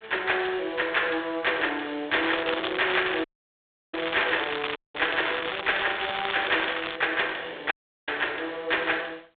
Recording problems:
telephone audio; 280 Hz to 3.6 kHz, G.726
distortion; soft clipping, signal-to-distortion ratio 13 dB
crackling; at 2 s and from 2.5 to 7 s; loose cable, SNR 5 dB
dropout; at 3 s for 0.5 s, at 5 s and at 7.5 s

